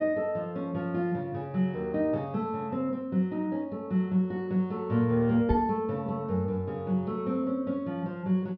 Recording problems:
treble cut off; nothing above 5.5 kHz
microphone thump; at 5.5 s; peak +3 dB vs average level

